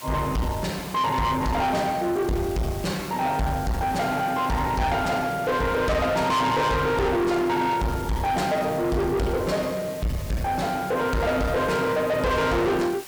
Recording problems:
distorted audio; soft clipping, signal-to-distortion ratio 7 dB
hiss; slope 0 dB per octave, SNR 17 dB

